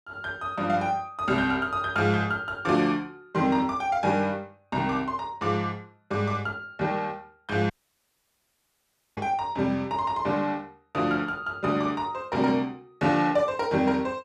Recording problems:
audio cutting out; at 7.5 s for 1.5 s

